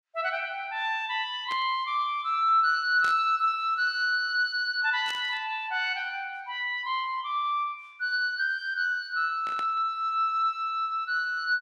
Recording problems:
static burst; 4 times, first at 1.5 s; peak -9 dB vs average level

